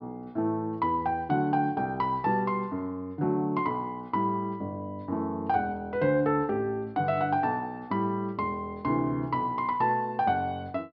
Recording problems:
low-pass filter; nothing above 5.5 kHz

